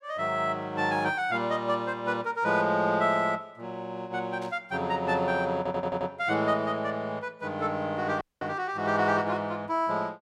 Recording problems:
static burst; at 4.5 s; peak -15 dB vs average level
audio stuttering; at 5.5 s
audio cutting out; at 8 s

